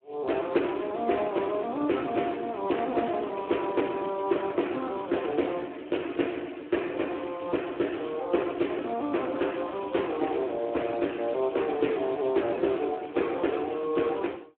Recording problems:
telephone audio; 260 Hz to 3.2 kHz, Speex

